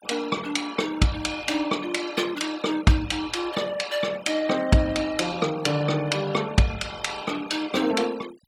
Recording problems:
denoising artefacts; signal-to-artefact ratio 17 dB

